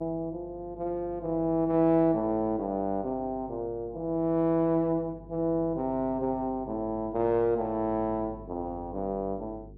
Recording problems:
hum; 50 Hz, harmonics up to 450 Hz, SNR 20 dB

